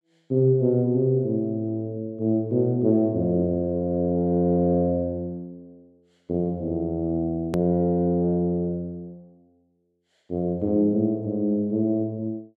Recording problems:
hard cut with a click; at 7.5 s

